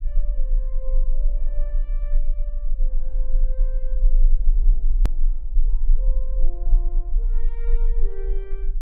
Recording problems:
low-frequency rumble; below 32 Hz, strongest tone 22 Hz, SNR -20 dB
click at an edit; at 5 s

